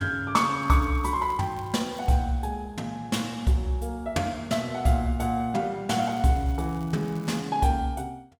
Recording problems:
crackle; from 0.5 to 2 s and from 6 to 7.5 s; loose cable, SNR 26 dB

